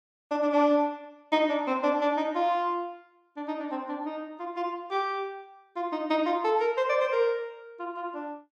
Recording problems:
none

